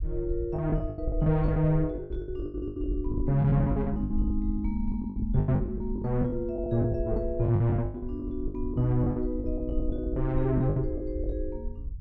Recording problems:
rumble; below 64 Hz, SNR 7 dB
lost packets; 18% of the sound replaced, filled with the last packet

